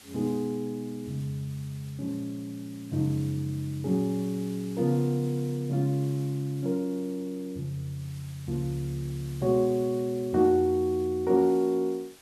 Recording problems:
hiss; slope 0 dB per octave, SNR 22 dB

